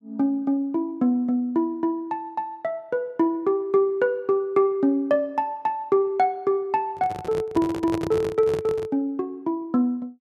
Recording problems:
handling noise; from 7 to 9 s; peak -2 dB vs average level

